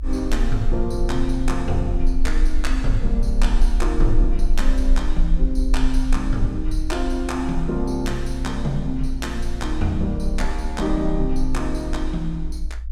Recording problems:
rumble; below 38 Hz, strongest tone 20 Hz, SNR 0 dB

